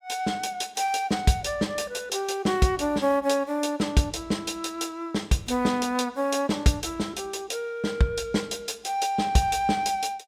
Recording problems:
none

